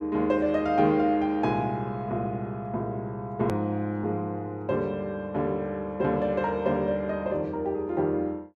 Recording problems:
hard cut with a click; at 3.5 s

